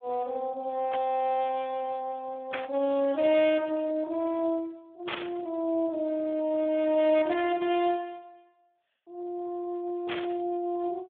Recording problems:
telephone audio; 300 Hz to 3.7 kHz, Speex
static burst; 4 times, first at 1 s; peak 0 dB vs average level

